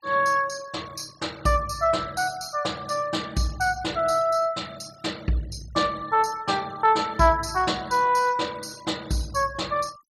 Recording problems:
denoising artefacts; signal-to-artefact ratio 22 dB

